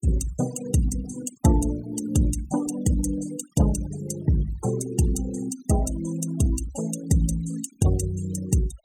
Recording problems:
denoising artefacts; signal-to-artefact ratio 14 dB

